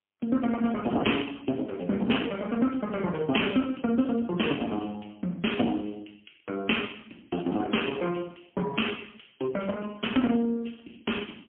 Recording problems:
phone line; 190 Hz to 3.3 kHz, AMR-NB, then MP3

